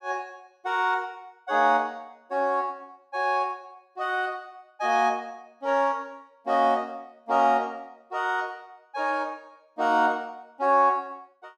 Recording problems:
none

